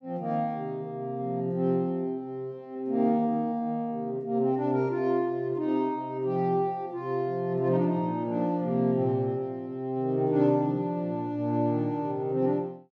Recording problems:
none

